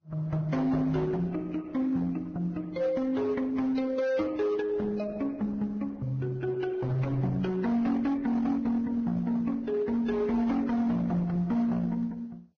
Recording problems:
lossy compression; Opus, then Vorbis, log-spectral distance 2 dB, nothing above 6.5 kHz
distortion; hard clipping, signal-to-distortion ratio 12 dB

